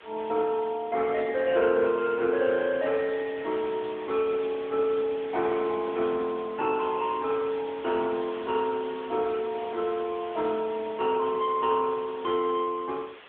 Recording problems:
telephone audio; 280 Hz to 2.8 kHz, AMR-NB
background hiss; SNR 18 dB

